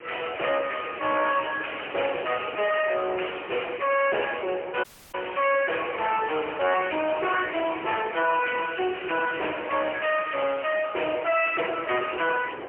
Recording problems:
telephone audio; 320 Hz to 3.1 kHz, AMR-NB, then MP3
distortion; soft clipping, signal-to-distortion ratio 6 dB
background hiss; SNR 21 dB
wind noise; below 1.1 kHz, SNR 18 dB
audio cutting out; at 5 s

